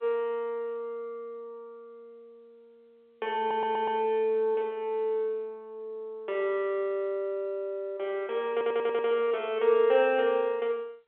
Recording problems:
telephone audio; 340 Hz to 3.7 kHz, G.711
audio stuttering; at 3.5 s and at 8.5 s

